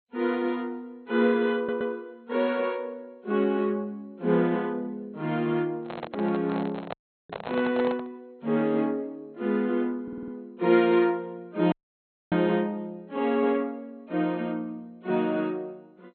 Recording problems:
lossy compression; MP2, log-spectral distance 2 dB, nothing above 3.5 kHz
stutter; at 1.5 s and at 10 s
handling noise; from 6 to 8 s; peak -3 dB vs average level
dropout; at 7 s and at 12 s for 0.5 s

